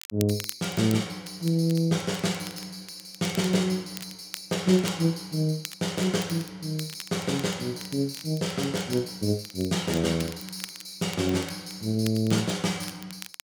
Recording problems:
crackling; vinyl, SNR 15 dB

